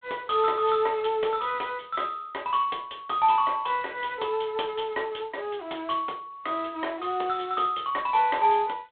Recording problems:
phone line; 320 Hz to 3.6 kHz, G.726

